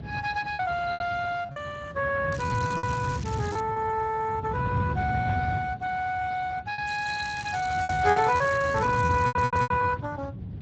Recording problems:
lossy codec; Speex, log-spectral distance 5 dB, nothing above 7.3 kHz
wind noise; below 190 Hz, SNR 7 dB
lost packets; 8% of the sound replaced, filled with repeated pitch periods
crackling; from 2.5 to 3.5 s and from 7 to 9.5 s; loose cable, SNR 16 dB
stutter; at 9 s

